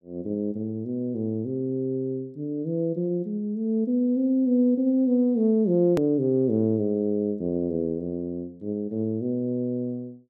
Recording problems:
hard cut with a click; at 6 s

